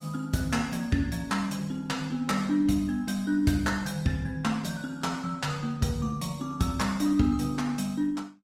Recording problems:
codec artefacts; Opus, log-spectral distance 3 dB, nothing above 16.5 kHz

